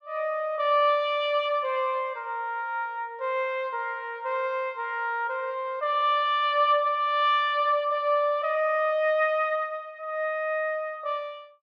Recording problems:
none

